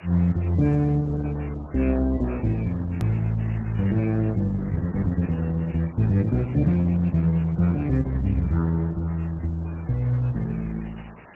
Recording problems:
codec artefacts; MP3, then Opus, log-spectral distance 10 dB, nothing above 13.1 kHz
hiss; SNR 21 dB
edit click; at 3 s

